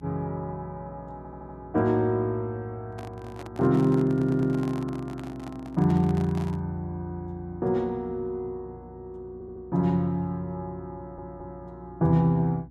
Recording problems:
hum; 60 Hz, harmonics up to 300 Hz, SNR 22 dB
audio stuttering; 4 times, first at 1 s
handling noise; from 3 to 6.5 s; peak -9 dB vs average level

